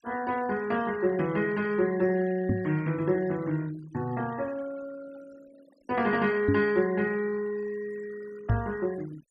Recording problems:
denoising artefacts; signal-to-artefact ratio 20 dB
knock on the microphone; at 2.5 s, at 6.5 s and at 8.5 s; peak +6 dB vs average level

